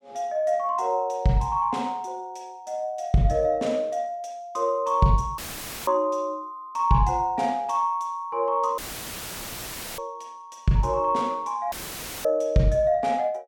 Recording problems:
dropout; at 5.5 s, at 9 s for 1 s and at 12 s for 0.5 s; filled with static

